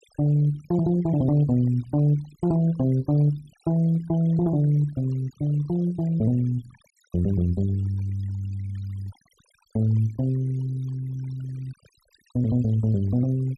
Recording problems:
denoising artefacts; signal-to-artefact ratio 24 dB

